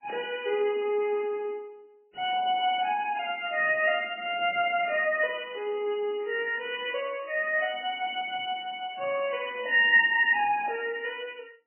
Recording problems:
codec artefacts; MP2, then MP3, log-spectral distance 4 dB, nothing above 2.5 kHz

